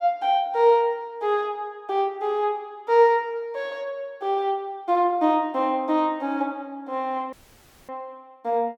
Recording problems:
audio cutting out; at 7.5 s for 0.5 s

